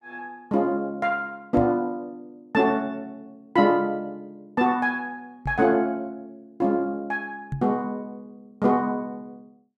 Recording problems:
microphone thump; at 1.5 s, at 5.5 s and at 7.5 s; peak -2 dB vs average level

